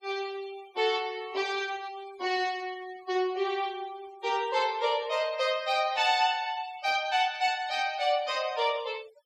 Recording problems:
denoising artefacts; signal-to-artefact ratio 22 dB

